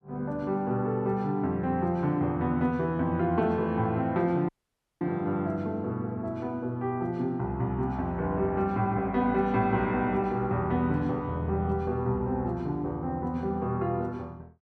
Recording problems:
audio cutting out; at 4.5 s for 0.5 s

